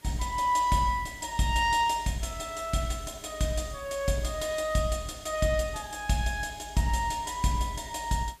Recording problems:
background hiss; slope -2 dB per octave, SNR 25 dB

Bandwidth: 15 kHz